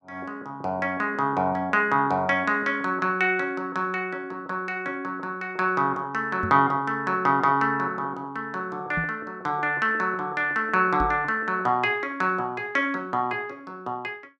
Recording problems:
knock on the microphone; at 6.5 s, at 9 s and at 11 s; peak -2 dB vs average level

